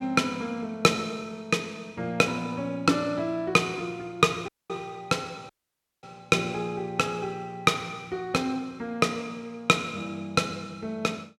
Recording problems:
dropout; at 4.5 s and at 5.5 s for 0.5 s

